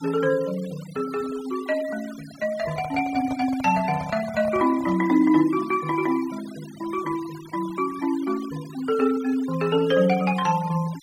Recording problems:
noise reduction artefacts; signal-to-artefact ratio 18 dB
handling noise; from 2.5 to 5 s; peak -7 dB vs average level

